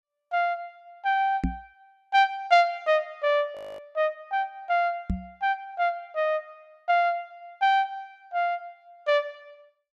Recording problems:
knock on the microphone; at 1.5 s and at 5 s; peak +3 dB vs average level
frozen audio; at 3.5 s

